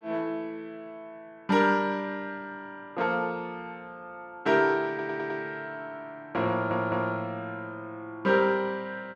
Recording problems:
audio stuttering; at 5 s and at 6.5 s

